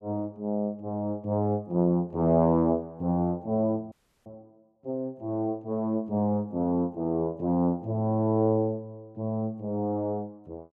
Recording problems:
audio freezing; at 4 s

